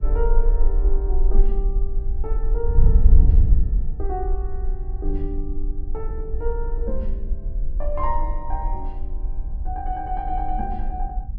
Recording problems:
rumble; below 38 Hz, strongest tone 24 Hz, SNR -4 dB
wind noise; below 66 Hz, SNR -5 dB

